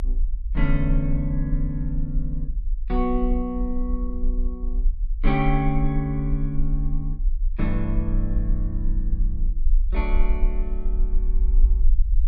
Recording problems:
low-frequency rumble; below 42 Hz, strongest tone 28 Hz, SNR -1 dB

